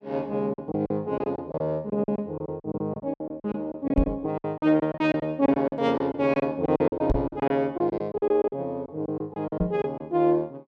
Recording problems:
lost packets; 15% of the sound replaced, filled with silence
microphone bump; at 4 s, at 7 s and at 9.5 s; peak +5 dB vs average level

